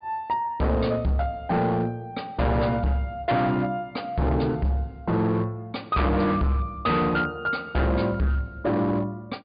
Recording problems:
treble missing; nothing above 4.9 kHz
distortion; hard clipping, signal-to-distortion ratio 7 dB

